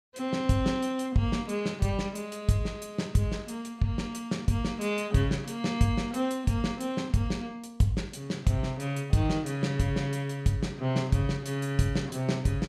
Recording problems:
none

